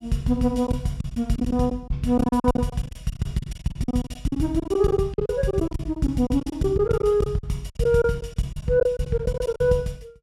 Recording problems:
lost packets; 16% of the sound replaced, filled with silence

